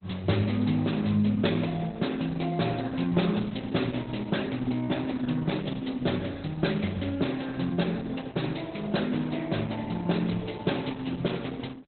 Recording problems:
lossy compression; Opus, log-spectral distance 8 dB, nothing above 4.1 kHz

